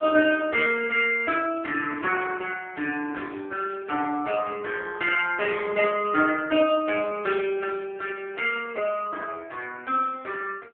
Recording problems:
telephone audio; 260 Hz to 3.3 kHz, AMR-NB

